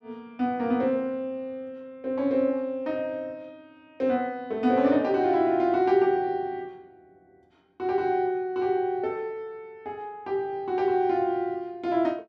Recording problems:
none

